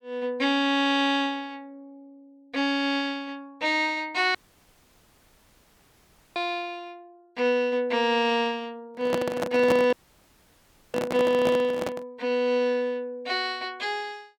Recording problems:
dropout; at 4.5 s for 2 s and at 10 s for 1 s
handling noise; from 9 to 12 s; peak +2 dB vs average level

